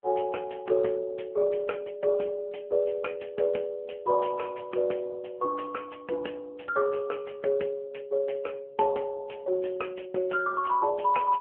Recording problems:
phone line; 300 Hz to 2.5 kHz, AMR-NB

